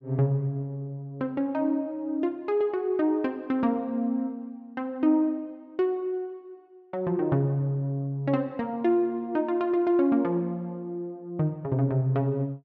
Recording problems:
none

